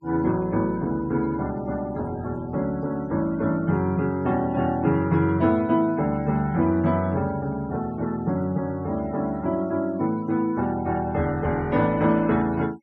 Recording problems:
denoising artefacts; signal-to-artefact ratio 24 dB

